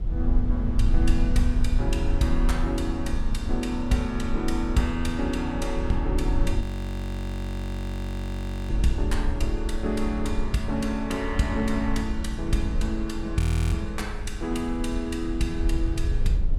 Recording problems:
electrical hum; 60 Hz, harmonics up to 360 Hz, SNR 22 dB
rumble; below 64 Hz, SNR 1 dB
audio freezing; at 6.5 s for 2 s and at 13 s

